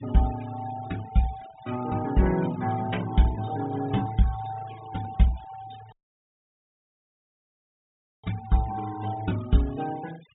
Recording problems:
treble missing; nothing above 4 kHz
denoising artefacts; signal-to-artefact ratio 18 dB
dropout; at 6 s for 2.5 s

